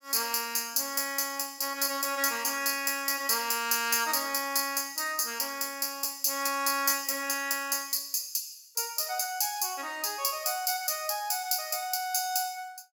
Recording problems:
none

